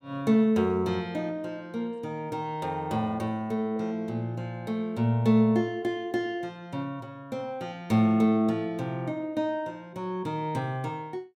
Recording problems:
none

